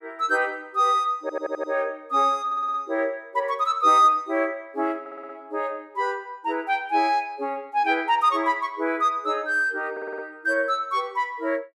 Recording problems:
stutter; 4 times, first at 1 s

